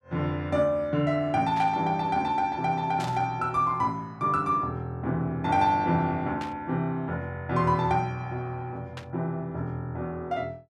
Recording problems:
burst of static; 4 times, first at 1.5 s; peak -8 dB vs average level

